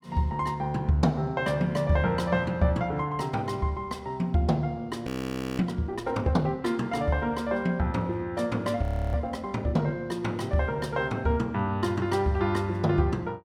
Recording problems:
frozen audio; at 5 s for 0.5 s and at 9 s

